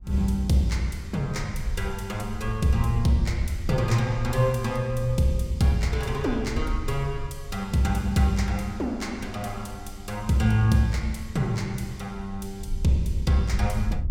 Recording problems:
wind noise; below 72 Hz, SNR 11 dB

